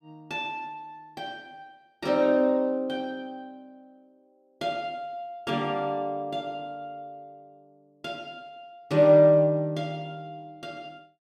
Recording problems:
none

